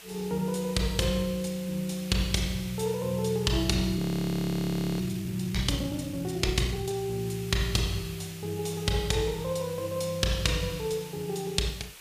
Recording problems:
hiss; SNR 15 dB
audio freezing; at 4 s for 1 s

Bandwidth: 15 kHz